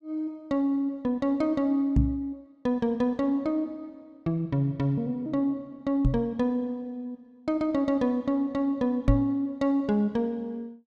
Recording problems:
knock on the microphone; at 2 s, at 6 s and at 9 s; peak +8 dB vs average level

